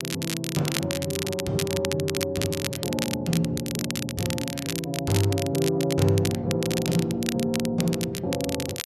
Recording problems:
crackle; vinyl, SNR 6 dB

